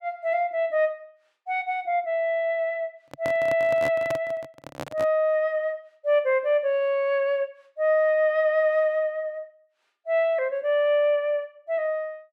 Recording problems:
handling noise; from 3 to 5 s; peak -4 dB vs average level

